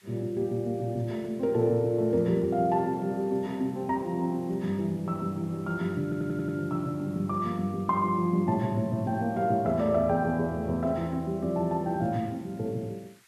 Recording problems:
hiss; SNR 29 dB
audio stuttering; at 6 s

